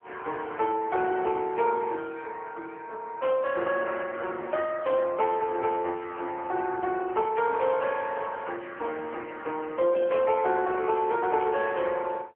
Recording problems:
telephone audio; 260 Hz to 2.6 kHz, AMR-NB

